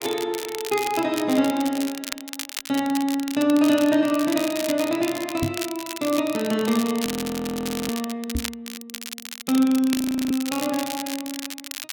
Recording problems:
crackle; vinyl, SNR 10 dB
knock on the microphone; at 5.5 s and at 8.5 s; peak +1 dB vs average level
frozen audio; at 7 s for 1 s and at 10 s

